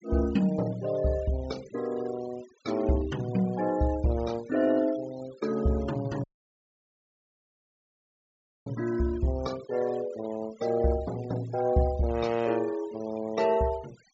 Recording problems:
treble missing; nothing above 8 kHz
denoising artefacts; signal-to-artefact ratio 19 dB
dropout; at 6 s for 2.5 s

